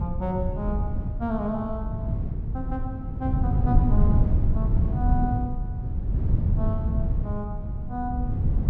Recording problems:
wind on the microphone; below 120 Hz, SNR -6 dB

